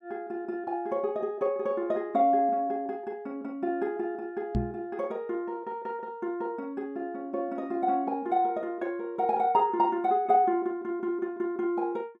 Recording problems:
microphone bump; at 4.5 s; peak +4 dB vs average level

